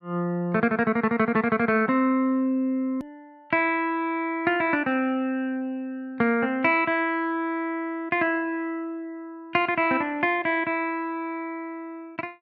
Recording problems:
hard cut with a click; at 3 s

